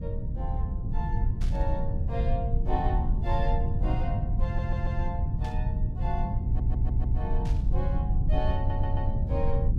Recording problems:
electrical hum; 50 Hz, harmonics up to 500 Hz, SNR 24 dB
low-frequency rumble; below 98 Hz, SNR -8 dB
static burst; at 1.5 s, at 5.5 s and at 7.5 s; peak -6 dB vs average level
audio stuttering; at 4.5 s, at 6.5 s and at 8.5 s

